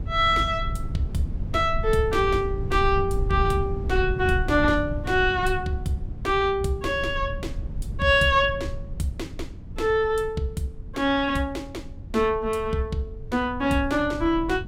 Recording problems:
low-frequency rumble; below 100 Hz, SNR 9 dB

